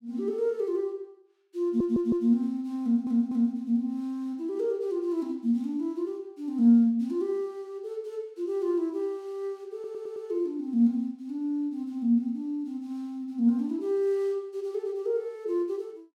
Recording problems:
stutter; at 1.5 s, at 3 s and at 9.5 s

